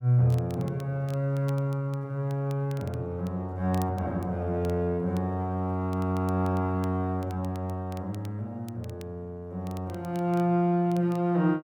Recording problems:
crackle; vinyl, SNR 25 dB

